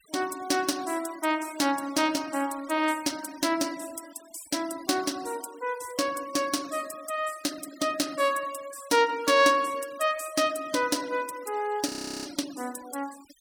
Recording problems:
noise reduction artefacts; signal-to-artefact ratio 19 dB
audio freezing; at 12 s

